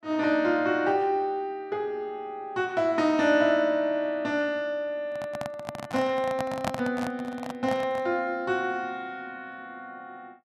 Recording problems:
microphone handling noise; from 5 to 8 s; peak +2 dB vs average level

